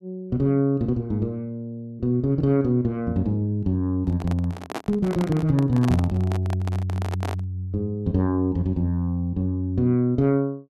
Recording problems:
microphone handling noise; from 4 to 7.5 s; peak -3 dB vs average level

